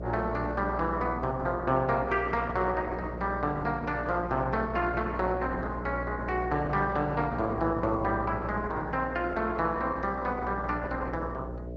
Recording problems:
codec artefacts; Opus, log-spectral distance 3 dB
electrical hum; 60 Hz, harmonics up to 660 Hz, SNR 9 dB

